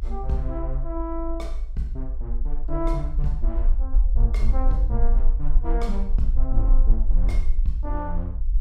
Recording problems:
low-frequency rumble; below 44 Hz, strongest tone 18 Hz, SNR -6 dB

